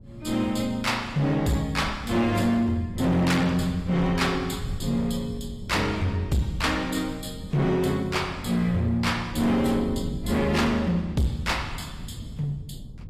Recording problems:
lossy compression; AAC, log-spectral distance 2 dB
distortion; hard clipping, uneven, signal-to-distortion ratio 11 dB
wind on the microphone; below 170 Hz, SNR 13 dB

